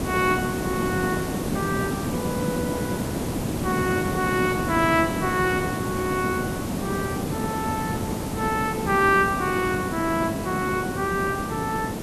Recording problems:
hiss; SNR 2 dB

